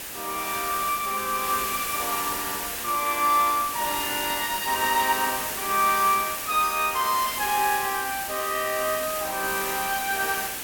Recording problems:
hiss; slope -1 dB per octave, SNR 4 dB

